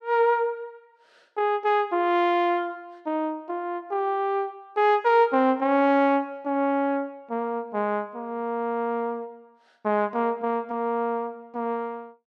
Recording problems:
none

